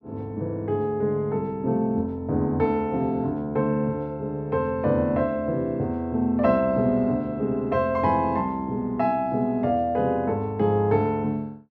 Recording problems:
none

